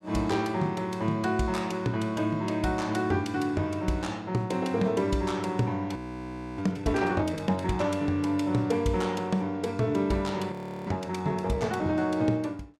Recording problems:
frozen audio; at 6 s for 0.5 s and at 11 s

